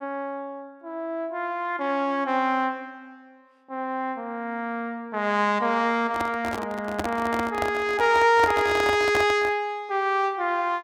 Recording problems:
handling noise; from 6 to 9.5 s; peak +1 dB vs average level

